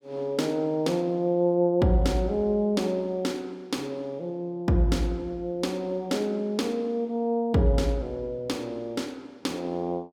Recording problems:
none

